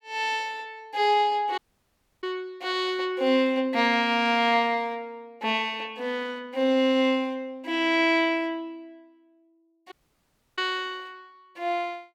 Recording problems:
audio cutting out; at 1.5 s for 0.5 s and at 10 s for 0.5 s

